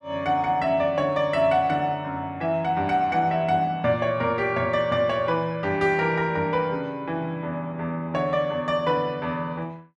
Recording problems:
none

